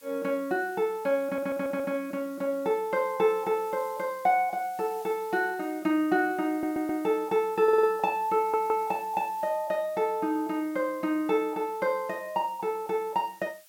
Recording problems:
background hiss; slope +4 dB per octave, SNR 24 dB
stutter; 4 times, first at 1 s

